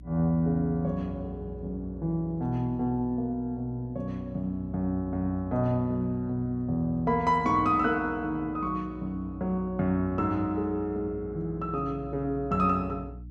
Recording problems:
hum; 60 Hz, harmonics up to 300 Hz, SNR 16 dB

